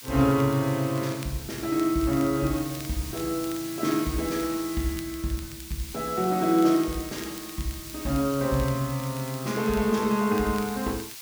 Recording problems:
background hiss; slope +4 dB per octave, SNR 12 dB
crackle; vinyl, SNR 22 dB

